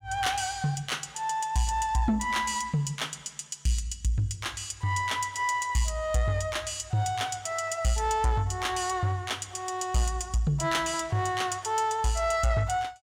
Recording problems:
distorted audio; soft clipping, signal-to-distortion ratio 12 dB

